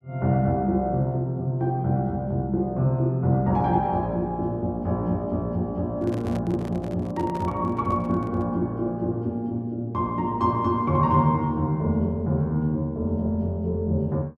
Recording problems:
microphone handling noise; from 6 to 8.5 s; peak -8 dB vs average level

